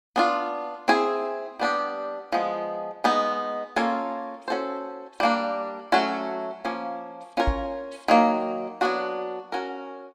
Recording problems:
microphone bump; at 7.5 s; peak +4 dB vs average level

